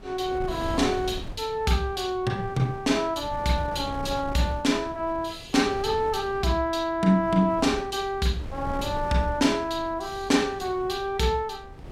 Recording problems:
wind on the microphone; below 300 Hz, SNR 14 dB

